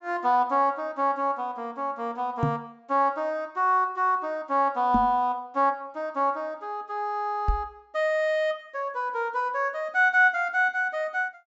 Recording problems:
low-pass filter; nothing above 8 kHz
knock on the microphone; at 2.5 s, at 5 s and at 7.5 s; peak +4 dB vs average level

